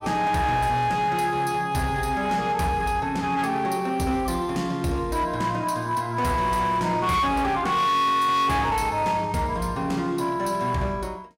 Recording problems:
distortion; hard clipping, signal-to-distortion ratio 10 dB

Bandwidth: 16 kHz